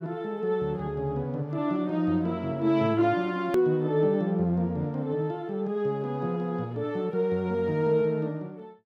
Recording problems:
edit click; at 3.5 s

